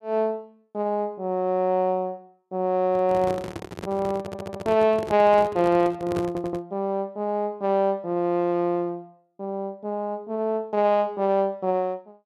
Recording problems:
microphone handling noise; from 3 to 6.5 s; peak -4 dB vs average level
audio stuttering; at 4 s and at 6.5 s

